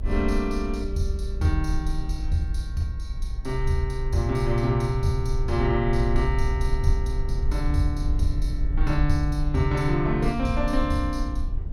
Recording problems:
rumble; below 54 Hz, SNR 3 dB

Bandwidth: 16 kHz